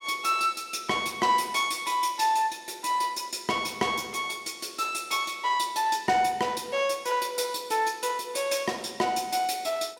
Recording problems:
none

